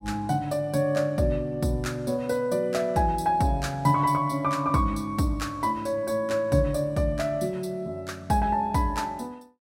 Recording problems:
none

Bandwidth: 16 kHz